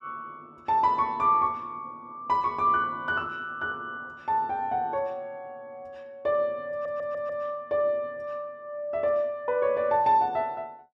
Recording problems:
stutter; at 6.5 s

